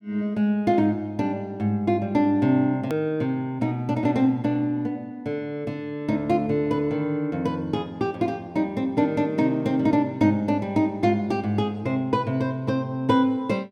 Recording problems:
edit click; at 3 s

